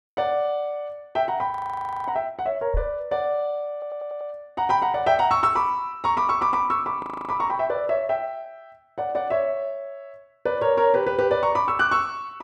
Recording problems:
audio freezing; at 1.5 s for 0.5 s and at 7 s
microphone thump; at 2.5 s; peak 0 dB vs average level
audio stuttering; at 3.5 s

